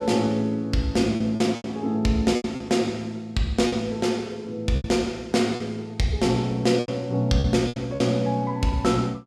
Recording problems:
packet loss; 7% of the sound replaced, filled with repeated pitch periods

